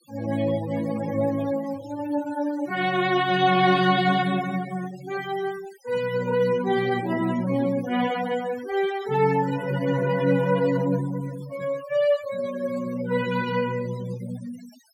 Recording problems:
noise reduction artefacts; signal-to-artefact ratio 15 dB

